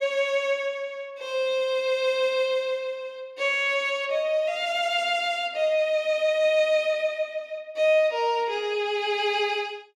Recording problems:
none

